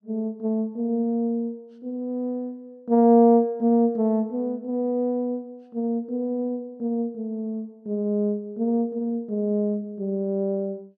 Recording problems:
none

